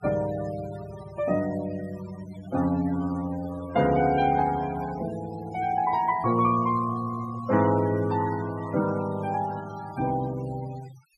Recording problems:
denoising artefacts; signal-to-artefact ratio 18 dB

